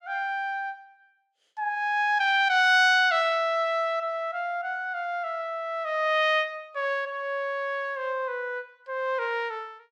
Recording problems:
none

